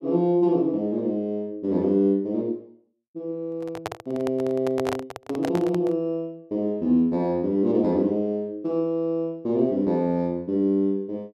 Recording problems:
handling noise; from 3.5 to 6 s; peak -1 dB vs average level

